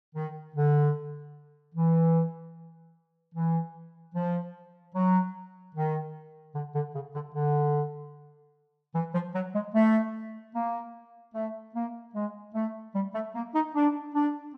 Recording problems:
none

